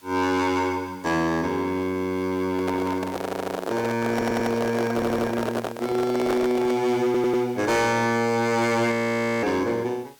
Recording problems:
distortion; hard clipping, signal-to-distortion ratio 10 dB
hiss; slope -1 dB per octave, SNR 27 dB
microphone handling noise; from 2.5 to 7 s; peak 0 dB vs average level
stutter; 4 times, first at 3 s
audio freezing; at 9 s for 0.5 s

